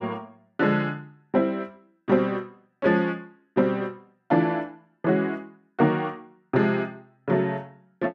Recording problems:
none

